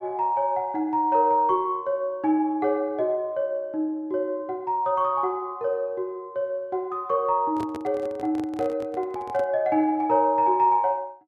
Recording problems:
microphone handling noise; from 7.5 to 9.5 s; peak -8 dB vs average level

